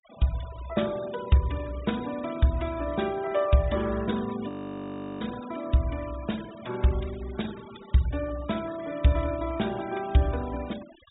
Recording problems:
treble missing; nothing above 4 kHz
denoising artefacts; signal-to-artefact ratio 18 dB
frozen audio; at 4.5 s for 0.5 s

